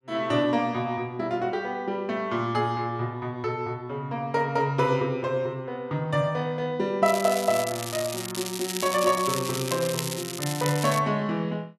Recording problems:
crackle; from 7 to 11 s; loose cable, SNR 6 dB

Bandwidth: 12.5 kHz